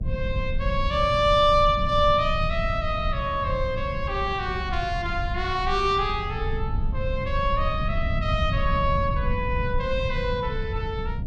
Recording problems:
mains hum; 60 Hz, harmonics up to 720 Hz, SNR 23 dB
low-frequency rumble; below 110 Hz, SNR 5 dB

